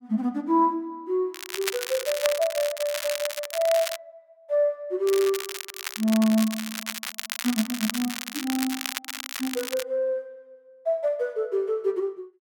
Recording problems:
crackle; from 1.5 to 4 s and from 5 to 10 s; loose cable, SNR 6 dB

